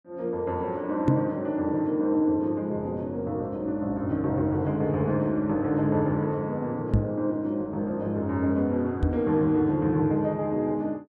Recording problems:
knock on the microphone; at 1 s, at 7 s and at 9 s; peak +8 dB vs average level

